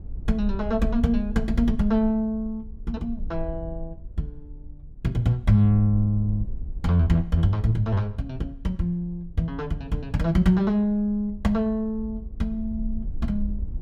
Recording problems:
low-frequency rumble; below 58 Hz, SNR 13 dB

